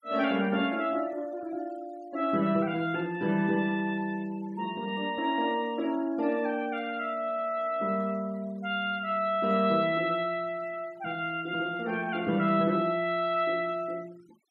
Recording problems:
denoising artefacts; signal-to-artefact ratio 24 dB

